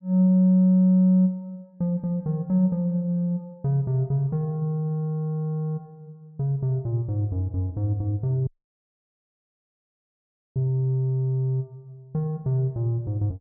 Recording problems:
dropout; at 8.5 s for 2 s

